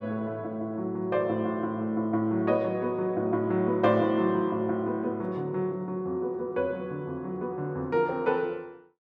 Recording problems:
none

